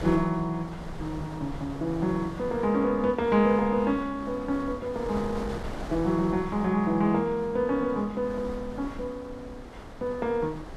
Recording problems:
wind on the microphone; below 710 Hz, SNR 13 dB

